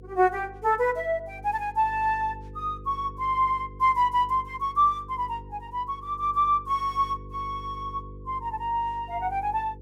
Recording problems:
hum; 50 Hz, harmonics up to 500 Hz, SNR 18 dB

